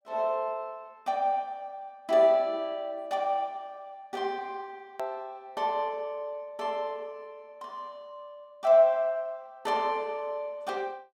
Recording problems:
edit click; at 5 s

